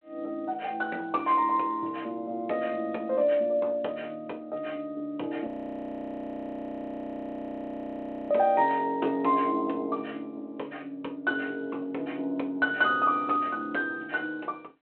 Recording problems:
phone line; 280 Hz to 3.9 kHz, G.726
frozen audio; at 5.5 s for 3 s

